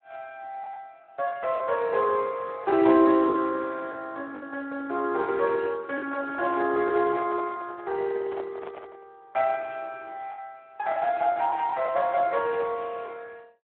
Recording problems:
phone line; 280 Hz to 2.8 kHz, Speex
lost packets; 6% of the sound replaced, filled with the last packet
microphone handling noise; from 6 to 9 s; peak -7 dB vs average level

